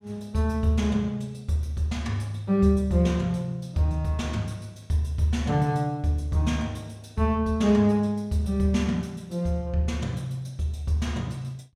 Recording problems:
none

